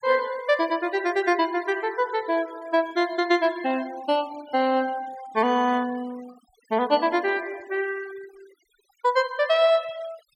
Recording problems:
noise reduction artefacts; signal-to-artefact ratio 22 dB

